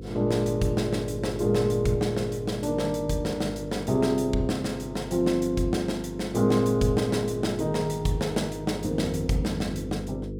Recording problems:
electrical hum; 50 Hz, harmonics up to 500 Hz, SNR 12 dB

